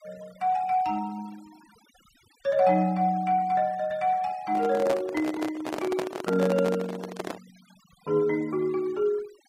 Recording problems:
noise reduction artefacts; signal-to-artefact ratio 24 dB
microphone handling noise; from 4.5 to 7.5 s; peak 0 dB vs average level

